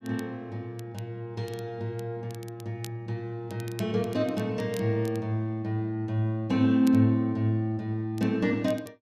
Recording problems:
crackle; vinyl, SNR 22 dB

